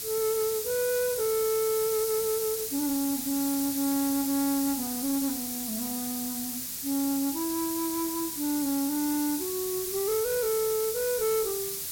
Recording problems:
distorted audio; soft clipping, signal-to-distortion ratio 9 dB
hiss; SNR 2 dB

